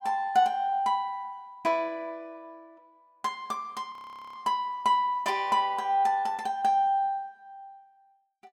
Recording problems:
audio freezing; at 4 s

